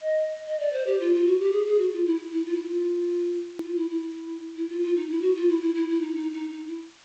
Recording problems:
lossy codec; G.722, log-spectral distance 2 dB, nothing above 18.3 kHz
hiss; SNR 26 dB
edit click; at 3.5 s

